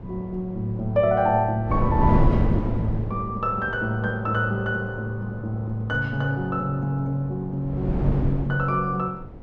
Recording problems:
wind noise; below 230 Hz, SNR 1 dB

